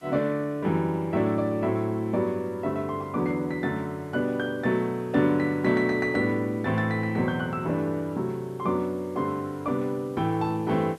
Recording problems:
hiss; slope -1 dB per octave, SNR 30 dB

